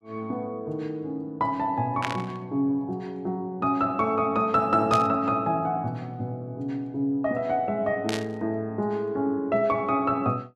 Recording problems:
static burst; at 2 s, at 5 s and at 8 s; peak +1 dB vs average level

